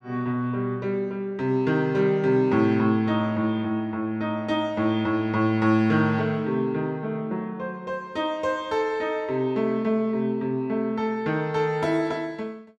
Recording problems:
none

